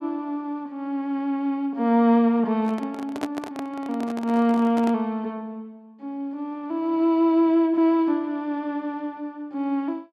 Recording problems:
handling noise; from 2.5 to 5 s; peak -3 dB vs average level

